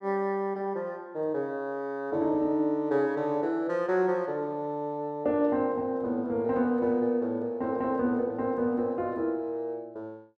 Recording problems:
none

